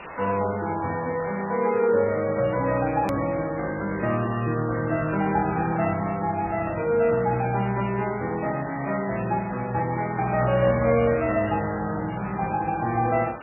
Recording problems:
lossy compression; MP3, log-spectral distance 9 dB, nothing above 2.4 kHz
hiss; SNR 15 dB
click at an edit; at 3 s

